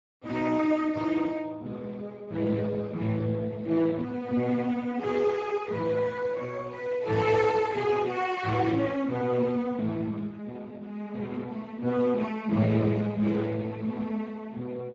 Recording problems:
lossy codec; Speex, log-spectral distance 4 dB, nothing above 7.3 kHz

